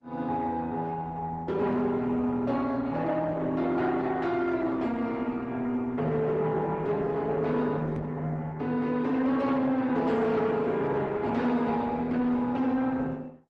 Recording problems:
lossy codec; Opus, then Opus, log-spectral distance 2 dB
distorted audio; soft clipping, signal-to-distortion ratio 12 dB
microphone bump; at 8 s; peak -6 dB vs average level

